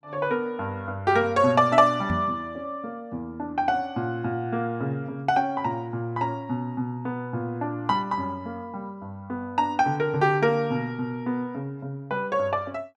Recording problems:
microphone thump; at 2 s; peak +2 dB vs average level

